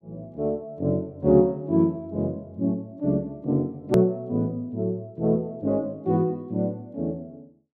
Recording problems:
edit click; at 4 s

